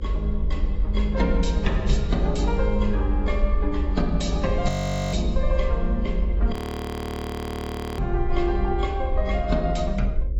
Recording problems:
codec artefacts; AAC, log-spectral distance 2 dB, nothing above 17.1 kHz
electrical hum; 50 Hz, harmonics up to 550 Hz, SNR 16 dB
rumble; below 56 Hz, SNR 0 dB
frozen audio; at 4.5 s and at 6.5 s for 1.5 s

